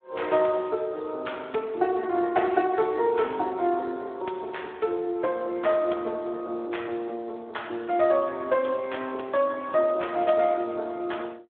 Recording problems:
telephone audio; 280 Hz to 3.6 kHz, Speex

